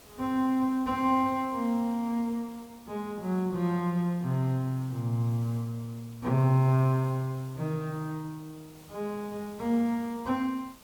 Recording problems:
background hiss; SNR 24 dB

